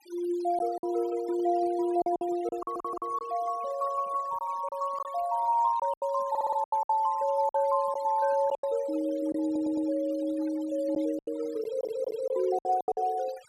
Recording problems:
denoising artefacts; signal-to-artefact ratio 21 dB
packet loss; 9% of the sound replaced, filled with silence
audio stuttering; 4 times, first at 2.5 s

